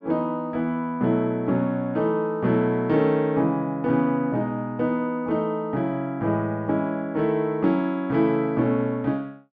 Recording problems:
none

